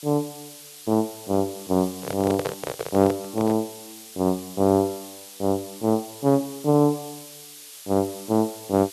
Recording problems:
background hiss; slope +4 dB per octave, SNR 16 dB
handling noise; from 2 to 3.5 s; peak +1 dB vs average level

